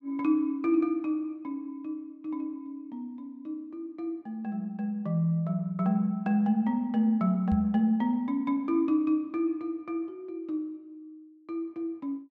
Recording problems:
knock on the microphone; at 7.5 s; peak 0 dB vs average level

